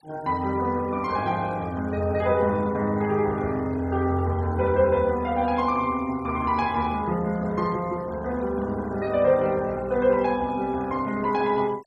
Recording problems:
denoising artefacts; signal-to-artefact ratio 25 dB

